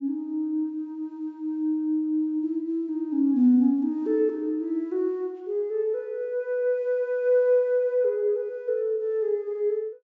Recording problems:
treble cut off; nothing above 8 kHz

